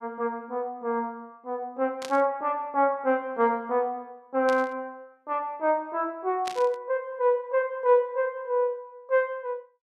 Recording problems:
burst of static; at 2 s, at 4.5 s and at 6.5 s; peak -5 dB vs average level

